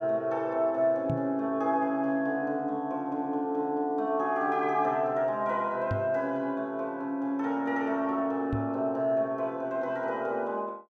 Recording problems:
knock on the microphone; at 1 s, at 6 s and at 8.5 s; peak +1 dB vs average level

